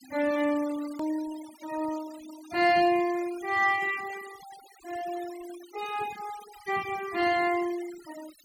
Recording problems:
denoising artefacts; signal-to-artefact ratio 17 dB
click at an edit; at 1 s

